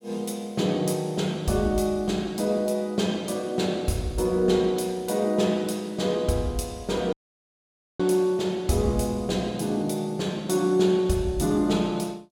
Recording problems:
audio cutting out; at 7 s for 1 s

